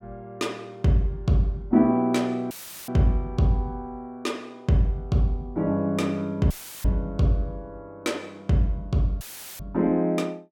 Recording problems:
audio cutting out; at 2.5 s, at 6.5 s and at 9 s; filled with static

